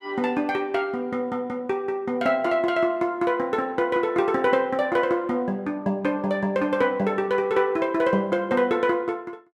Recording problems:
none

